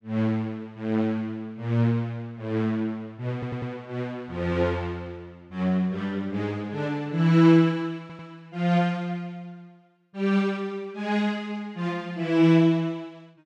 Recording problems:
audio stuttering; at 3.5 s and at 8 s

